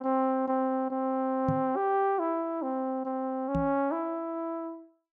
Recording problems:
microphone bump; at 1.5 s and at 3.5 s; peak +2 dB vs average level

